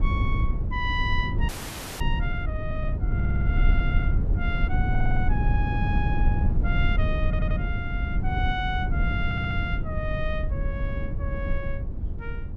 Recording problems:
rumble; below 98 Hz, SNR -5 dB
audio freezing; at 1.5 s for 0.5 s
stutter; 4 times, first at 3 s

